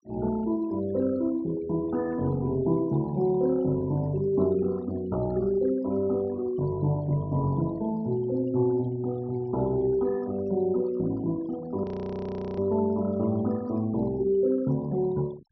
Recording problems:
treble cut off; nothing above 5.8 kHz
denoising artefacts; signal-to-artefact ratio 20 dB
frozen audio; at 12 s for 0.5 s

